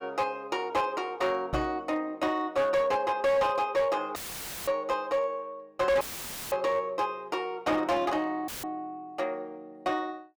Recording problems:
distorted audio; hard clipping, signal-to-distortion ratio 11 dB
microphone thump; at 1.5 s; peak -1 dB vs average level
dropout; at 4 s for 0.5 s, at 6 s for 0.5 s and at 8.5 s; filled with static

